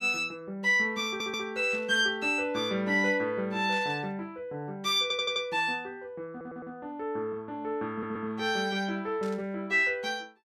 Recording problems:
stutter; 4 times, first at 1 s
burst of static; at 1.5 s, at 3.5 s and at 9 s; peak -14 dB vs average level

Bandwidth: 15.5 kHz